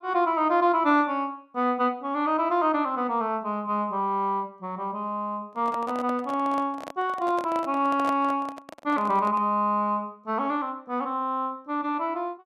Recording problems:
microphone handling noise; from 5.5 to 9.5 s; peak -3 dB vs average level

